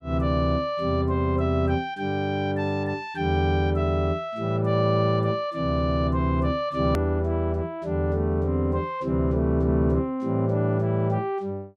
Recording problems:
edit click; at 7 s

